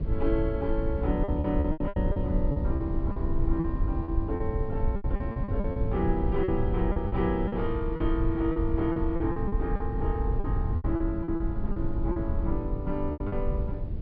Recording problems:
low-pass filter; nothing above 5.2 kHz
low-frequency rumble; below 94 Hz, SNR 0 dB
lost packets; 12% of the sound replaced, filled with repeated pitch periods

